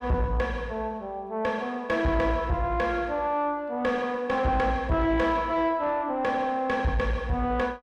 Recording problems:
distorted audio; soft clipping, signal-to-distortion ratio 11 dB

